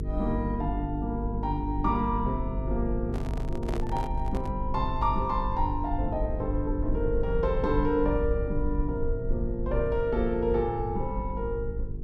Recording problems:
electrical hum; 50 Hz, harmonics up to 450 Hz, SNR 6 dB
low-frequency rumble; below 62 Hz, SNR 6 dB
microphone handling noise; from 3 to 4.5 s; peak -2 dB vs average level

